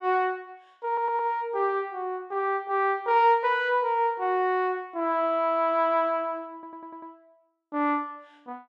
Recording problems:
audio stuttering; at 1 s and at 6.5 s

